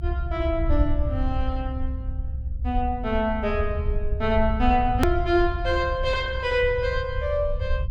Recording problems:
rumble; below 76 Hz, SNR 4 dB
click at an edit; at 5 s

